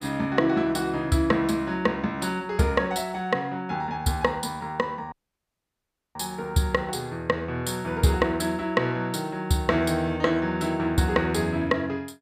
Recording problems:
audio cutting out; at 5 s for 1 s

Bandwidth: 15 kHz